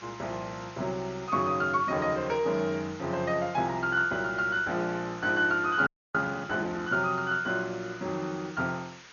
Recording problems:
codec artefacts; MP2, log-spectral distance 10 dB, nothing above 6.2 kHz
hiss; SNR 19 dB
frozen audio; at 6 s

